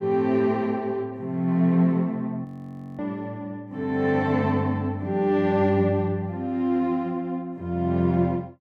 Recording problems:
frozen audio; at 2.5 s for 0.5 s

